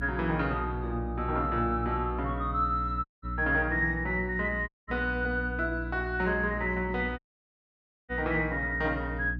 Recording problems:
hum; 60 Hz, harmonics up to 300 Hz, SNR 8 dB
audio cutting out; at 3 s, at 4.5 s and at 7 s for 1 s

